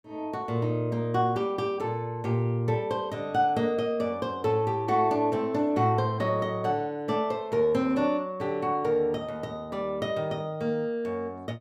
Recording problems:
none

